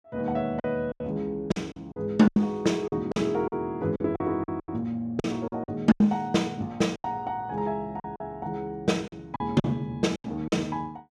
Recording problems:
lost packets; 11% of the sound replaced, filled with silence

